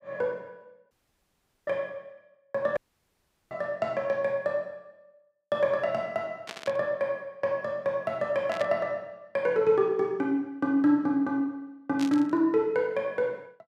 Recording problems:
audio cutting out; at 1 s for 1 s and at 3 s for 0.5 s
burst of static; at 6.5 s, at 8.5 s and at 12 s; peak -5 dB vs average level

